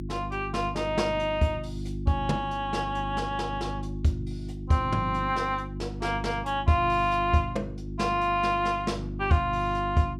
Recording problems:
mains hum; 50 Hz, harmonics up to 350 Hz, SNR 8 dB

